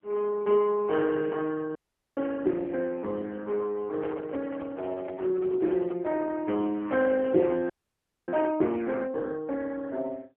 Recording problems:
phone line; 240 Hz to 2.9 kHz, AMR-NB
audio freezing; at 2 s and at 7.5 s for 0.5 s
handling noise; from 4 to 6 s; peak -7 dB vs average level

